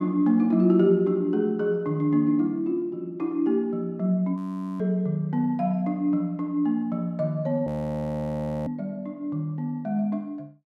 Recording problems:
frozen audio; at 4.5 s and at 7.5 s for 1 s

